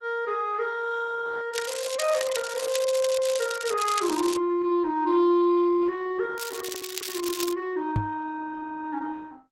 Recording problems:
lossy compression; Opus, log-spectral distance 5 dB
crackling; from 1.5 to 4.5 s and from 6.5 to 7.5 s; loose cable, SNR 7 dB
microphone thump; at 8 s; peak +5 dB vs average level

